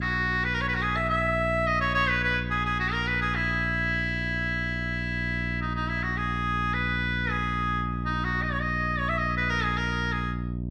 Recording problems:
hum; 60 Hz, harmonics up to 600 Hz, SNR 5 dB

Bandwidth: 14 kHz